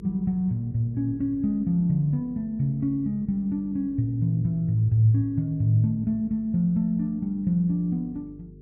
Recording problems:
hum; 50 Hz, harmonics up to 450 Hz, SNR 22 dB

